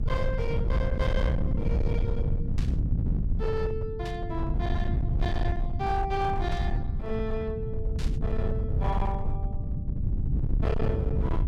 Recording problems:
distorted audio; hard clipping, signal-to-distortion ratio 8 dB
hum; 50 Hz, harmonics up to 500 Hz, SNR 15 dB
rumble; below 120 Hz, SNR -3 dB
burst of static; 4 times, first at 2.5 s; peak -5 dB vs average level

